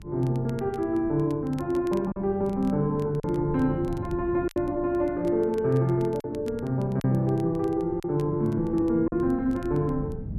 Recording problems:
hum; 50 Hz, harmonics up to 600 Hz, SNR 22 dB
wind on the microphone; below 180 Hz, SNR 15 dB
crackling; vinyl, SNR 29 dB
packet loss; 3% of the sound replaced, filled with silence

